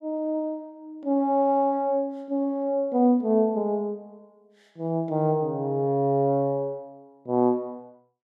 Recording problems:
none

